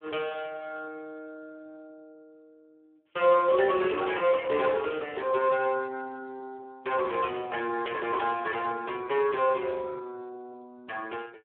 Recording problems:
telephone audio; 280 Hz to 3.4 kHz, Speex

